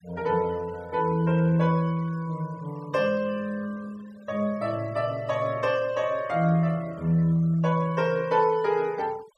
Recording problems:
denoising artefacts; signal-to-artefact ratio 25 dB

